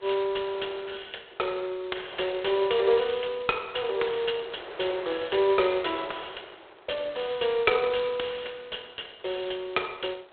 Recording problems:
phone line; 320 Hz to 3.5 kHz, G.726
wind on the microphone; below 1.8 kHz, SNR 19 dB

